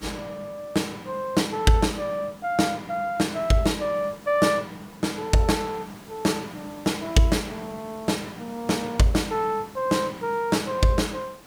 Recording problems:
hiss; slope -4 dB per octave, SNR 23 dB

